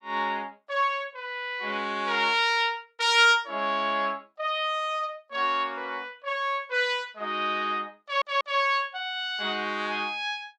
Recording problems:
audio stuttering; at 8 s

